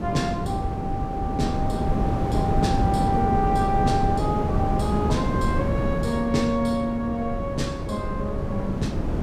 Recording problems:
wind on the microphone; below 310 Hz, SNR 0 dB

